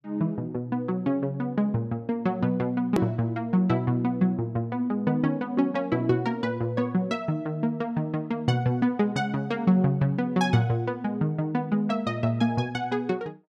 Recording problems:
click at an edit; at 3 s

